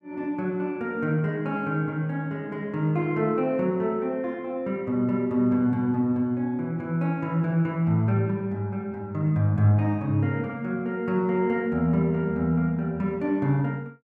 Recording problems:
none

